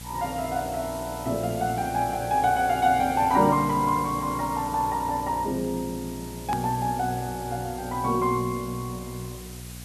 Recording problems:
electrical hum; 60 Hz, harmonics up to 720 Hz, SNR 16 dB
background hiss; slope 0 dB per octave, SNR 16 dB
click at an edit; at 6.5 s

